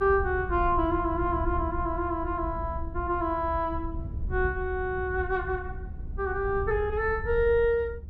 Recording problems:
low-frequency rumble; below 78 Hz, SNR 8 dB

